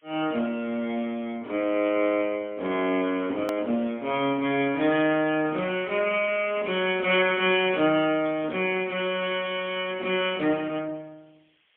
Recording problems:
phone line; 190 Hz to 3.4 kHz, AMR-NB, then MP3
background hiss; SNR 41 dB
hard cut with a click; at 3.5 s

